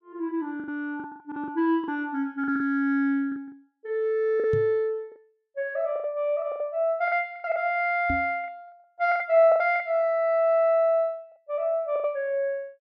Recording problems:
lost packets; 10% of the sound replaced, filled with the last packet
microphone bump; at 4.5 s and at 8 s; peak -2 dB vs average level

